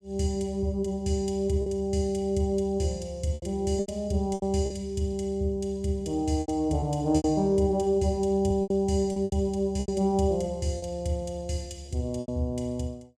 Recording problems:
packet loss; 7% of the sound replaced, filled with repeated pitch periods

